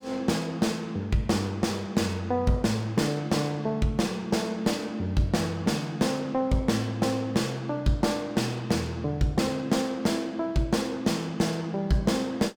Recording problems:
distortion; soft clipping, signal-to-distortion ratio 10 dB

